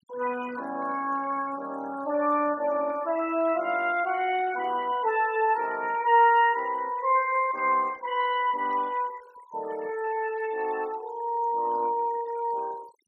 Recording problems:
denoising artefacts; signal-to-artefact ratio 20 dB

